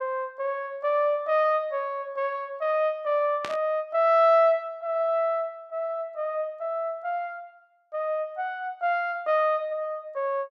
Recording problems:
static burst; at 3.5 s; peak -4 dB vs average level

